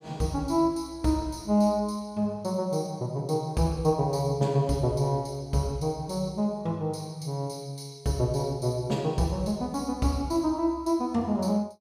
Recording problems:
none

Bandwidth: 15.5 kHz